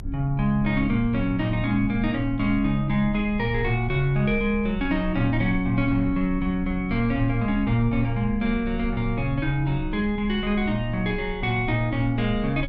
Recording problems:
rumble; below 70 Hz, strongest tone 30 Hz, SNR 12 dB

